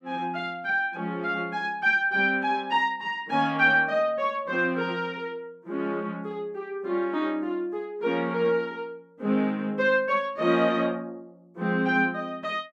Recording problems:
none

